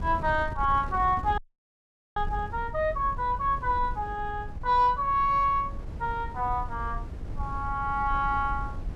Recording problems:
wind on the microphone; below 98 Hz, SNR 11 dB
audio freezing; at 1.5 s for 1 s

